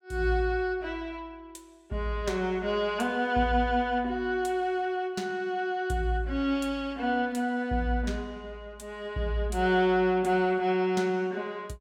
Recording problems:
none

